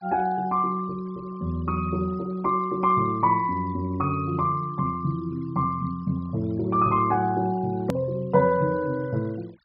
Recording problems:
treble missing; nothing above 5.5 kHz
noise reduction artefacts; signal-to-artefact ratio 28 dB
click at an edit; at 8 s

